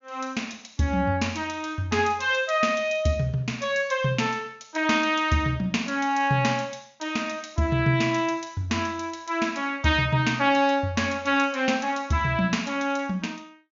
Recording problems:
treble missing; nothing above 7 kHz

